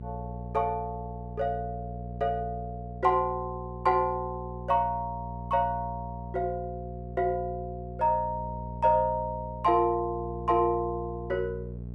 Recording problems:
hum; 60 Hz, harmonics up to 480 Hz, SNR 10 dB

